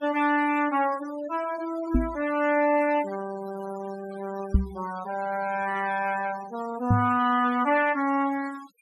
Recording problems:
noise reduction artefacts; signal-to-artefact ratio 17 dB
knock on the microphone; at 2 s, at 4.5 s and at 7 s; peak +9 dB vs average level

